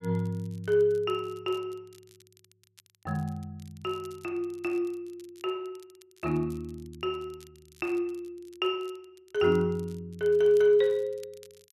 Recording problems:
crackle; vinyl, SNR 29 dB

